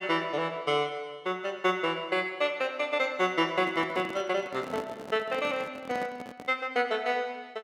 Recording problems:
handling noise; from 3.5 to 6.5 s; peak -6 dB vs average level

